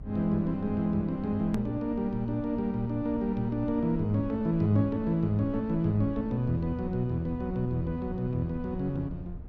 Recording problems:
electrical hum; 60 Hz, harmonics up to 420 Hz, SNR 22 dB
low-frequency rumble; below 86 Hz, SNR 17 dB
edit click; at 1.5 s

